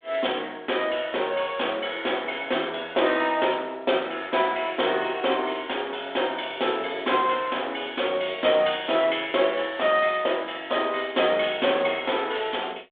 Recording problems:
telephone audio; 300 Hz to 3.6 kHz, G.726

